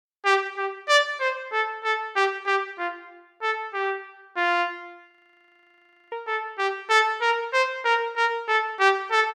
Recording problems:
frozen audio; at 5 s for 1 s

